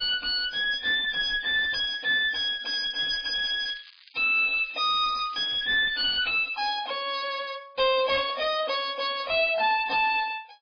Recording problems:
codec artefacts; MP3, log-spectral distance 6 dB, nothing above 5 kHz
distorted audio; soft clipping, signal-to-distortion ratio 9 dB
crackling; from 3 to 5.5 s; loose cable, SNR 23 dB

